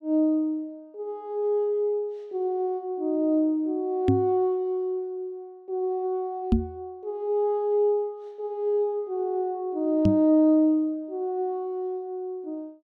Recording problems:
microphone bump; at 4 s, at 6.5 s and at 10 s; peak +8 dB vs average level

